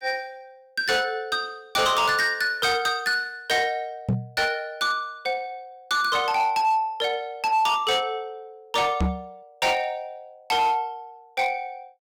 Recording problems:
distorted audio; hard clipping, signal-to-distortion ratio 11 dB
microphone thump; at 4 s and at 9 s; peak +3 dB vs average level

